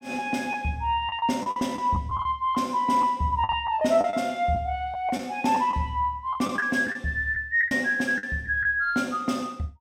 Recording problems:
packet loss; 8% of the sound replaced, filled with the last packet

